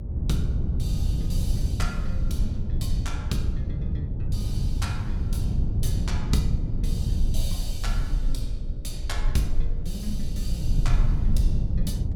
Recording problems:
hum; 60 Hz, harmonics up to 600 Hz, SNR 9 dB
low-frequency rumble; below 40 Hz, strongest tone 22 Hz, SNR 0 dB
wind on the microphone; below 120 Hz, SNR -6 dB

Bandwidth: 17 kHz